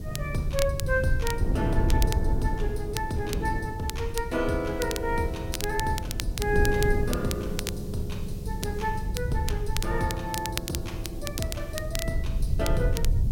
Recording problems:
hiss; slope +3 dB per octave, SNR 23 dB
low-frequency rumble; below 88 Hz, SNR 2 dB
wind noise; below 340 Hz, SNR 7 dB
crackle; vinyl, SNR 7 dB

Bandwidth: 16.5 kHz